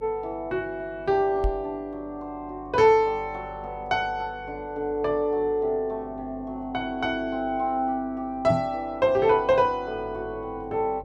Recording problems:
electrical hum; 50 Hz, harmonics up to 550 Hz, SNR 22 dB
microphone bump; at 1.5 s and at 8.5 s; peak +3 dB vs average level

